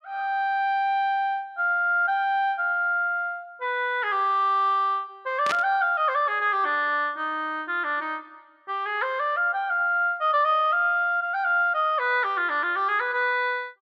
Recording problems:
static burst; at 5.5 s; peak -1 dB vs average level

